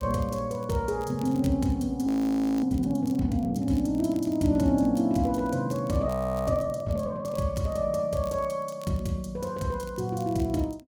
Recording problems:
crackling; vinyl, SNR 27 dB
audio freezing; at 2 s for 0.5 s and at 6 s

